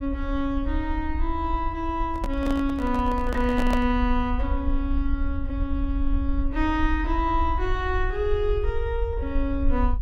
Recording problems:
rumble; below 58 Hz, SNR 3 dB
handling noise; from 2 to 4 s; peak +2 dB vs average level

